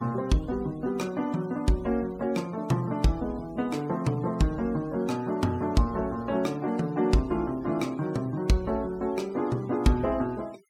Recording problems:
noise reduction artefacts; signal-to-artefact ratio 25 dB

